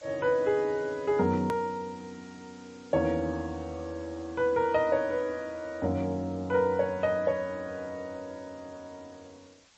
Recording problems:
lossy codec; G.722, then MP3, log-spectral distance 6 dB, nothing above 13.1 kHz
hiss; slope 0 dB per octave, SNR 27 dB
hard cut with a click; at 1.5 s

